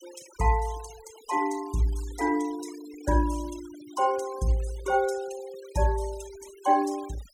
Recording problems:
noise reduction artefacts; signal-to-artefact ratio 18 dB

